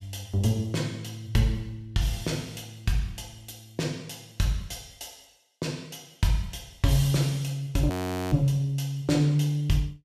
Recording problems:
frozen audio; at 8 s

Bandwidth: 15 kHz